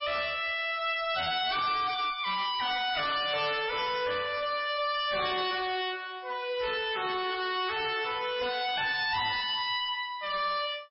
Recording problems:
codec artefacts; MP3, log-spectral distance 6 dB, nothing above 4.5 kHz
distorted audio; hard clipping, signal-to-distortion ratio 7 dB

